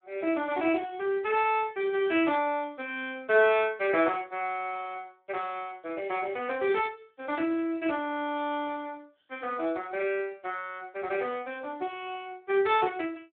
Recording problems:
phone line; 260 Hz to 3.6 kHz, Speex

